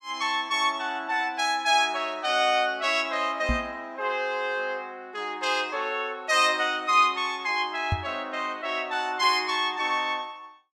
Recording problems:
microphone bump; at 3.5 s and at 8 s; peak +2 dB vs average level

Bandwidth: 15 kHz